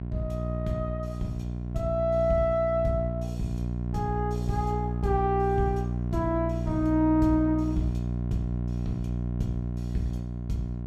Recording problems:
mains hum; 60 Hz, harmonics up to 720 Hz, SNR 2 dB

